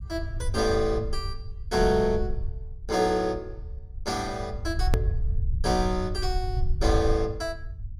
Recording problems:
low-frequency rumble; below 78 Hz, SNR 5 dB
edit click; at 5 s

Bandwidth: 15 kHz